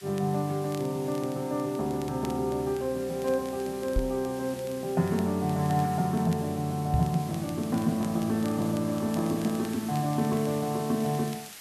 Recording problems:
background hiss; slope +2 dB per octave, SNR 16 dB
crackle; vinyl, SNR 23 dB
knock on the microphone; at 4 s and at 7 s; peak +4 dB vs average level

